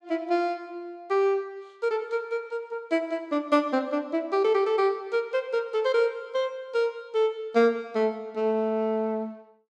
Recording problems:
none

